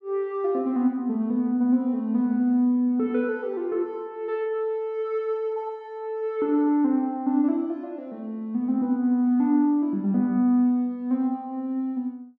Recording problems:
none

